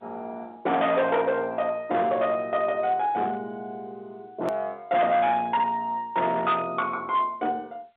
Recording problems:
phone line; 300 Hz to 3.8 kHz, G.711
distorted audio; hard clipping, uneven, signal-to-distortion ratio 11 dB
hard cut with a click; at 4.5 s

